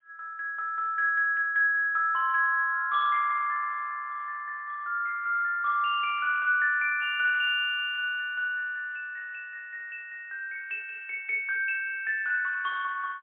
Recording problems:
telephone audio; 450 Hz to 3.7 kHz, AMR-NB, then MP3

